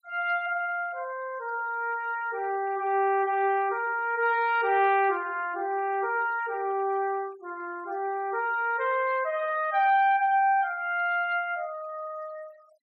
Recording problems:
denoising artefacts; signal-to-artefact ratio 26 dB

